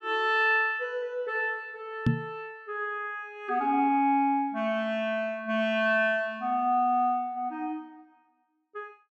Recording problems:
microphone thump; at 2 s; peak +6 dB vs average level

